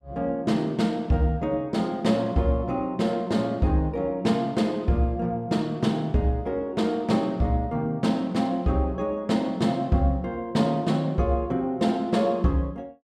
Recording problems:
none

